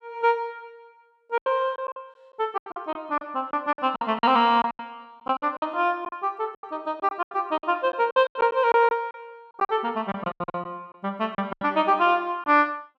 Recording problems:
lost packets; 14% of the sound replaced, filled with silence

